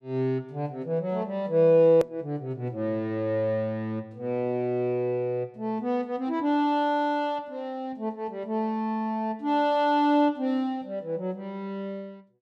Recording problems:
hard cut with a click; at 2 s

